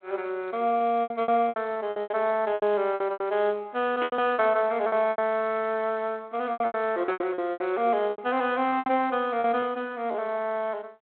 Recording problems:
telephone audio; 240 Hz to 3.5 kHz, G.726
lost packets; 14% of the sound replaced, filled with repeated pitch periods
static burst; at 4 s; peak -3 dB vs average level

